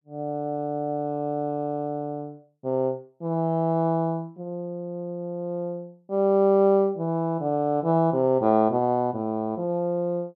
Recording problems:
none

